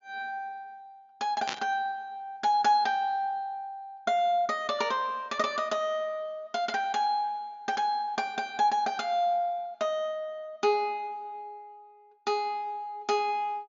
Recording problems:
treble missing; nothing above 7.2 kHz
burst of static; at 1.5 s; peak +1 dB vs average level

